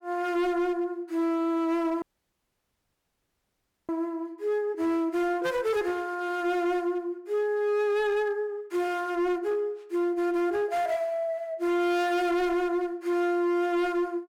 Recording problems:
distorted audio; hard clipping, signal-to-distortion ratio 10 dB
dropout; at 2 s for 2 s

